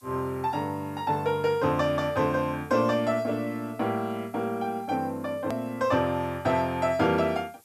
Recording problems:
background hiss; slope 0 dB per octave, SNR 29 dB
hard cut with a click; at 5.5 s

